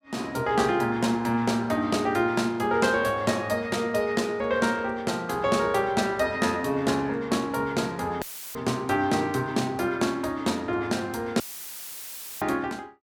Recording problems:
dropout; at 8 s and at 11 s for 1 s; filled with static

